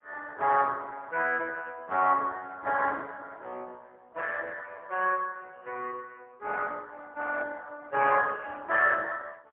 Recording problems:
telephone audio; 370 Hz to 2.9 kHz, AMR-NB, then MP3

